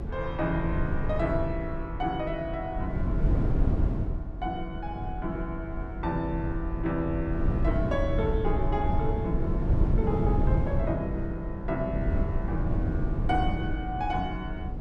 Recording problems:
rumble; below 140 Hz, SNR -1 dB

